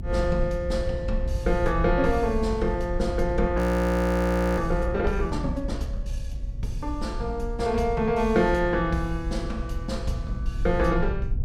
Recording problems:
electrical hum; 60 Hz, harmonics up to 720 Hz, SNR 21 dB
rumble; below 62 Hz, SNR 6 dB
frozen audio; at 3.5 s for 1 s

